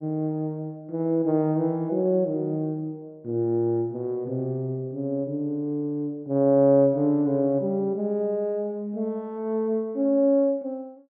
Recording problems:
none

